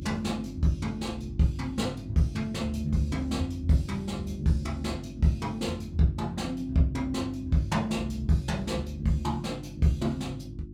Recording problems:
electrical hum; 50 Hz, harmonics up to 350 Hz, SNR 14 dB

